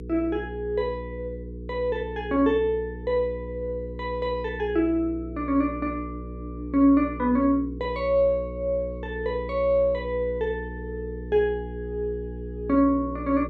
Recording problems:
hum; 60 Hz, harmonics up to 480 Hz, SNR 11 dB

